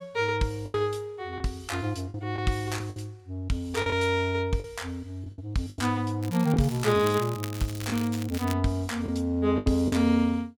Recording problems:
lost packets; 7% of the sound replaced, filled with the last packet
crackle; from 6 to 8.5 s; loose cable, SNR 14 dB

